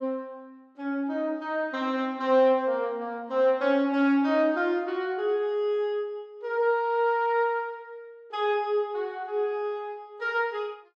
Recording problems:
none

